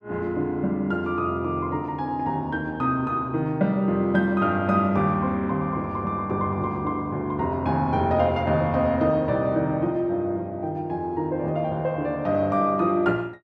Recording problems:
none

